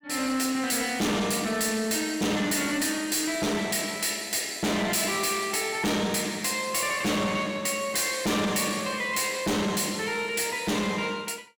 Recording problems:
distortion; soft clipping, signal-to-distortion ratio 6 dB

